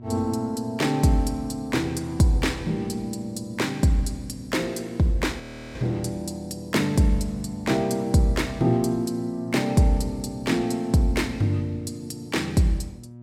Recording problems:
hum; 60 Hz, harmonics up to 720 Hz, SNR 19 dB
audio freezing; at 5.5 s

